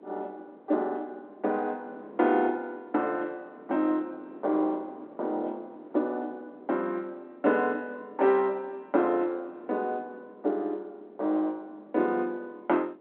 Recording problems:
telephone audio; 260 Hz to 4 kHz, G.711
wind on the microphone; below 550 Hz, SNR 21 dB

